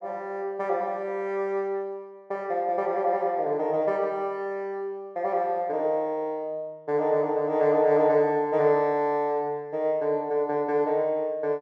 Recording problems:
none

